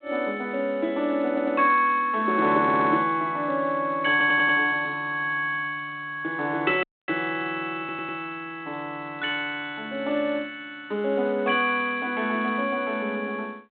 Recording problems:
phone line; 240 Hz to 3.8 kHz, G.726
audio stuttering; 4 times, first at 1.5 s
audio cutting out; at 7 s

